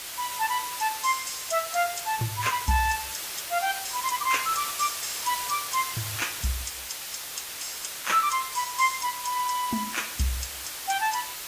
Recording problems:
lossy compression; AAC, log-spectral distance 13 dB
background hiss; slope +1 dB per octave, SNR 5 dB

